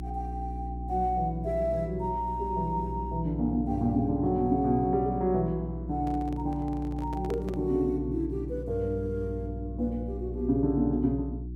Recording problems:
electrical hum; 60 Hz, harmonics up to 360 Hz, SNR 8 dB
microphone handling noise; from 6 to 7.5 s; peak -7 dB vs average level

